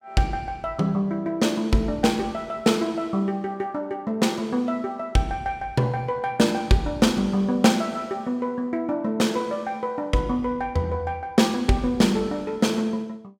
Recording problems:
none

